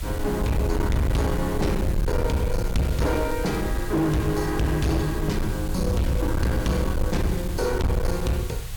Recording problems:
distorted audio; hard clipping, signal-to-distortion ratio 8 dB
hiss; slope -1 dB per octave, SNR 15 dB
low-frequency rumble; below 96 Hz, SNR 4 dB
crackling; from 3 to 5 s and from 6 to 7.5 s; loose cable, SNR 24 dB

